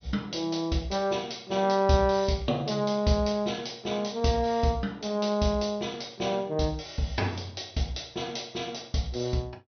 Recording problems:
treble missing; nothing above 6.2 kHz

